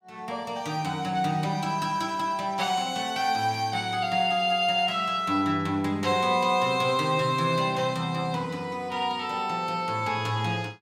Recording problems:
none

